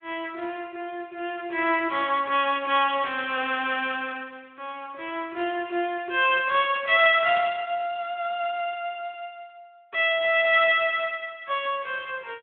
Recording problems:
telephone audio; 280 Hz to 3.4 kHz, Speex

